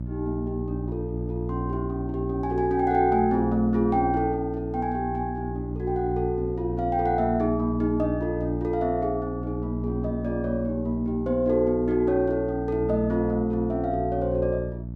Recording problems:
electrical hum; 60 Hz, harmonics up to 360 Hz, SNR 7 dB

